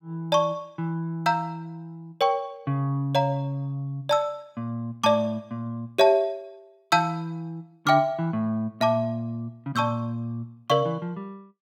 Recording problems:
none

